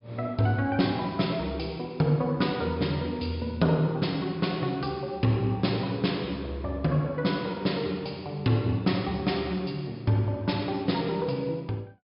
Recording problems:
treble missing; nothing above 5.5 kHz

